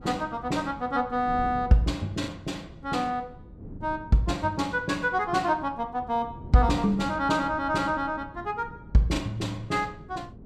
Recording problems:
wind on the microphone; below 240 Hz, SNR 17 dB
packet loss; 0.8% of the sound replaced, filled with the last packet

